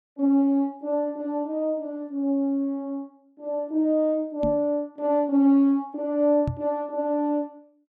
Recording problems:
microphone thump; at 4.5 s and at 6.5 s; peak 0 dB vs average level

